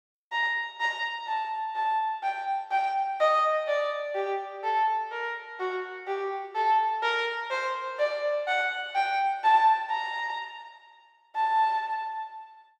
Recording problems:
none

